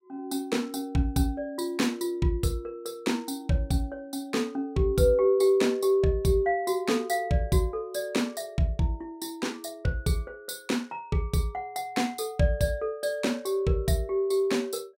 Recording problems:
none

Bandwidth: 16 kHz